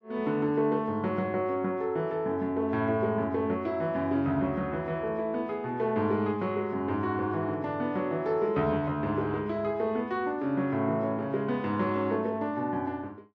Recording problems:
none

